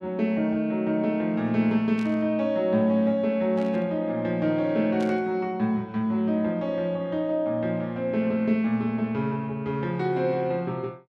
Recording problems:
static burst; at 2 s, at 3.5 s and at 5 s; peak -14 dB vs average level

